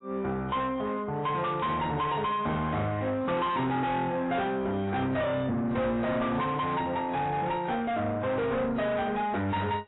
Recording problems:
codec artefacts; AAC, log-spectral distance 2 dB, nothing above 3.8 kHz
distortion; soft clipping, signal-to-distortion ratio 7 dB
static burst; at 1.5 s; peak -16 dB vs average level

